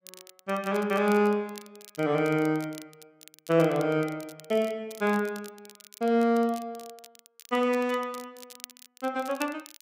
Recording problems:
crackle; vinyl, SNR 21 dB

